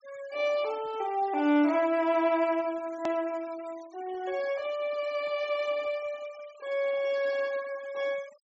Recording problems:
treble cut off; nothing above 7.9 kHz
noise reduction artefacts; signal-to-artefact ratio 22 dB
edit click; at 3 s

